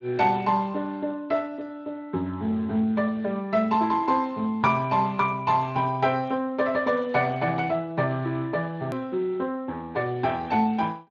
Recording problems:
lossy compression; Speex, log-spectral distance 3 dB
click at an edit; at 9 s

